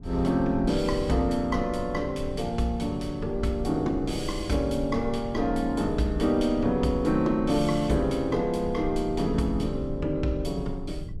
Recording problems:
rumble; below 88 Hz, SNR 12 dB

